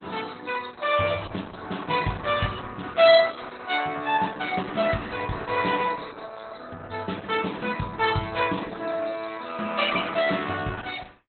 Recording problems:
lossy compression; Opus, log-spectral distance 8 dB, nothing above 4 kHz

